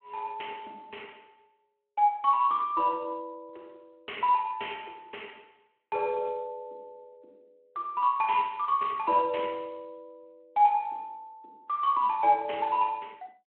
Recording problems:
telephone audio; 280 Hz to 3.2 kHz, Speex

